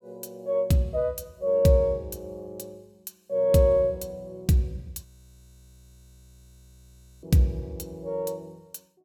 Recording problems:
audio freezing; at 5 s for 2 s

